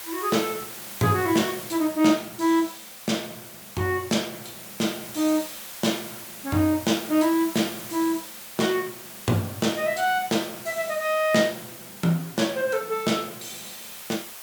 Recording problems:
hiss; slope +1 dB per octave, SNR 12 dB

